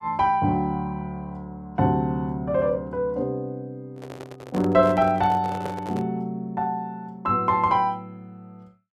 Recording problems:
microphone handling noise; from 4 to 6 s; peak -5 dB vs average level

